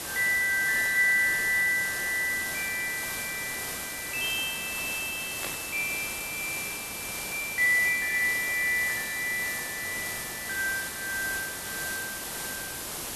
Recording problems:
background hiss; slope -2 dB per octave, SNR 6 dB
burst of static; at 5.5 s; peak -5 dB vs average level

